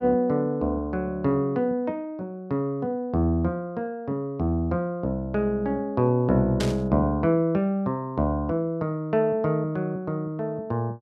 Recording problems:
static burst; at 6.5 s; peak -2 dB vs average level

